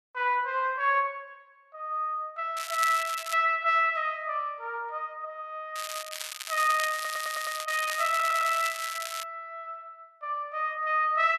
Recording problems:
crackle; at 2.5 s and from 6 to 9 s; loose cable, SNR 8 dB
audio stuttering; at 7 s and at 8 s

